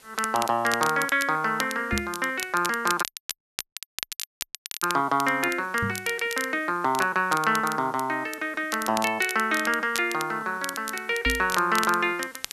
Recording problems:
background hiss; slope -1 dB per octave, SNR 27 dB
crackle; vinyl, SNR 10 dB
microphone bump; at 2 s, at 6 s and at 11 s; peak -1 dB vs average level
dropout; at 3 s for 2 s

